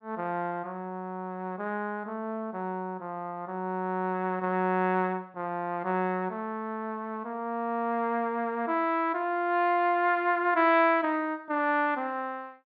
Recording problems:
treble missing; nothing above 5.5 kHz

